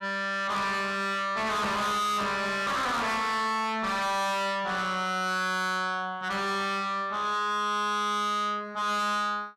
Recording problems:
distortion; soft clipping, signal-to-distortion ratio 6 dB

